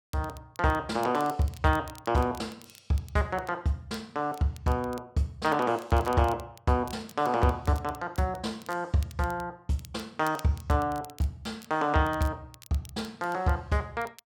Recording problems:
crackling; vinyl, SNR 22 dB

